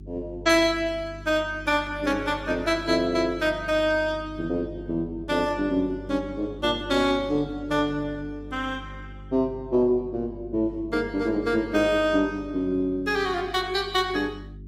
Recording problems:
lossy compression; Opus, log-spectral distance 2 dB, nothing above 15.5 kHz
hum; 50 Hz, harmonics up to 400 Hz, SNR 17 dB

